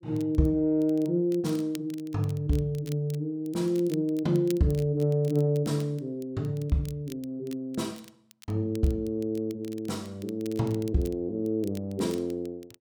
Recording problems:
crackling; vinyl, SNR 23 dB

